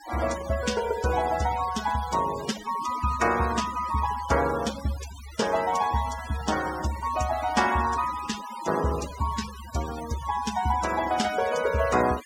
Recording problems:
noise reduction artefacts; signal-to-artefact ratio 12 dB

